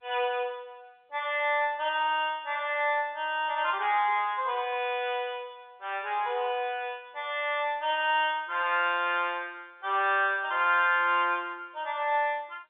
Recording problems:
telephone audio; 340 Hz to 3.6 kHz, G.711

